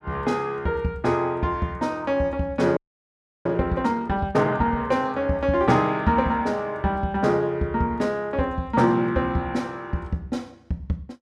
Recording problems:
audio freezing; at 3 s for 0.5 s

